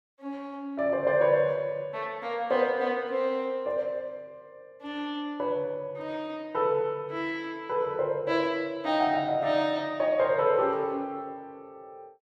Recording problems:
none

